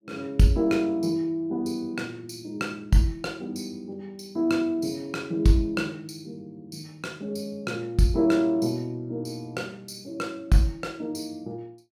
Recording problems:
none

